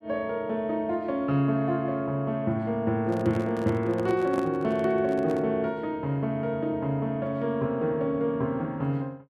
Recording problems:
microphone handling noise; from 3 to 5.5 s; peak -3 dB vs average level

